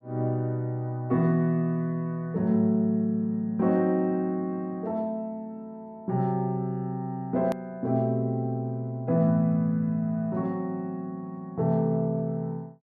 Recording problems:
click at an edit; at 7.5 s

